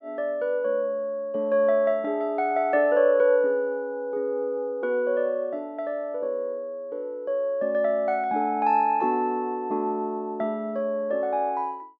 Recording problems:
none

